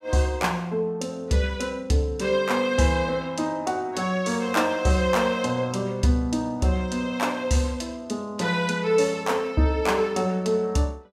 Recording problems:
none

